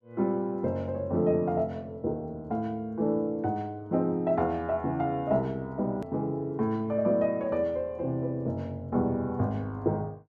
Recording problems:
click at an edit; at 6 s

